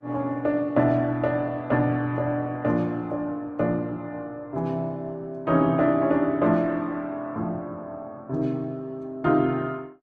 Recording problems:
codec artefacts; Vorbis, then Opus, log-spectral distance 2 dB

